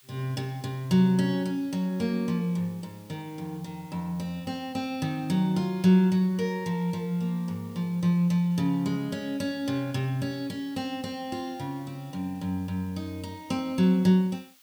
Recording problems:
background hiss; SNR 27 dB

